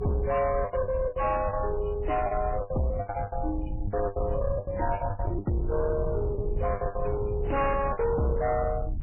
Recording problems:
codec artefacts; MP3, then MP3, log-spectral distance 3 dB, nothing above 2.9 kHz
distortion; soft clipping, signal-to-distortion ratio 11 dB
rumble; below 110 Hz, SNR 5 dB
lost packets; 14% of the sound replaced, filled with the last packet

